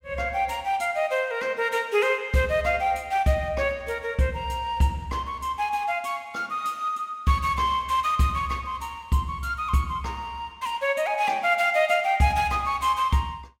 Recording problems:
none

